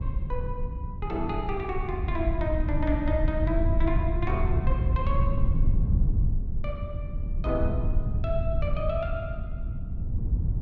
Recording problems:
low-frequency rumble; below 94 Hz, SNR -3 dB

